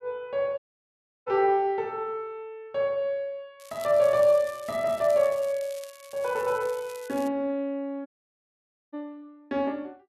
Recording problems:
dropout; at 0.5 s for 0.5 s and at 8 s for 1 s
crackle; from 3.5 to 7.5 s; loose cable, SNR 21 dB

